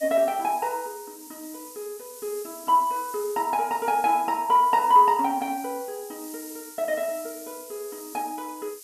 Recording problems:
hiss; SNR 17 dB

